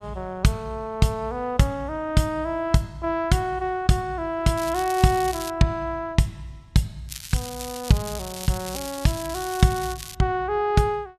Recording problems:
crackling; at 4.5 s and from 7 to 10 s; loose cable, SNR 12 dB

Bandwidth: 13.5 kHz